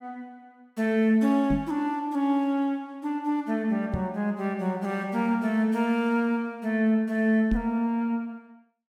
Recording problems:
knock on the microphone; at 1.5 s, at 4 s and at 7.5 s; peak +1 dB vs average level

